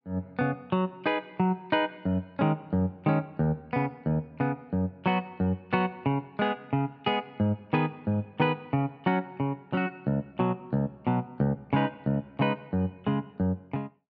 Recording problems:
none

